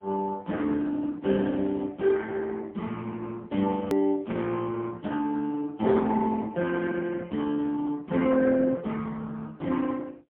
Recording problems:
telephone audio; 170 Hz to 2 kHz, AMR-NB, then MP3
edit click; at 4 s

